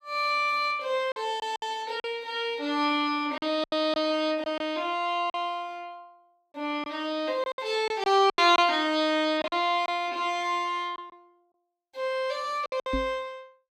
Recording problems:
packet loss; 7% of the sound replaced, filled with silence
microphone thump; at 13 s; peak -1 dB vs average level

